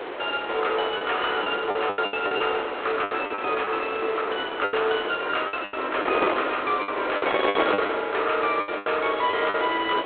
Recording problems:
phone line; 320 Hz to 3.5 kHz, G.726
wind noise; below 1.5 kHz, SNR 5 dB
packet loss; 12% of the sound replaced, filled with the last packet

